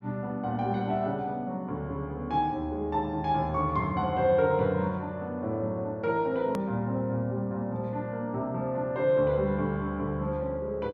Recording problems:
click at an edit; at 6.5 s

